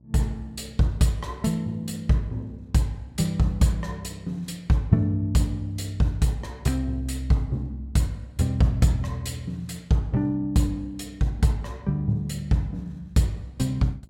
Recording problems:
hum; 60 Hz, harmonics up to 600 Hz, SNR 28 dB

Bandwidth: 16 kHz